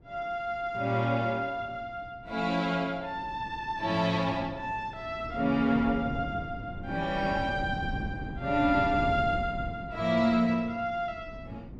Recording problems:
wind on the microphone; below 260 Hz, SNR 10 dB

